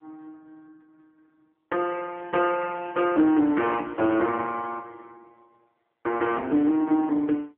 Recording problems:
phone line; 240 Hz to 3.2 kHz, AMR-NB

